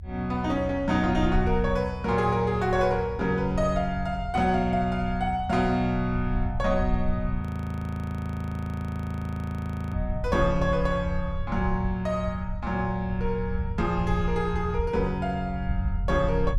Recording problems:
low-frequency rumble; below 82 Hz, SNR 7 dB
audio freezing; at 7.5 s for 2.5 s

